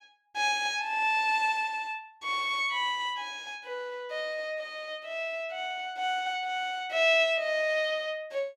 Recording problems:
none

